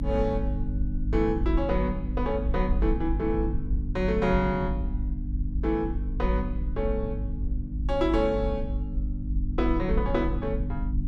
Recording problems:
hum; 50 Hz, harmonics up to 300 Hz, SNR 5 dB
low-frequency rumble; below 56 Hz, SNR 4 dB

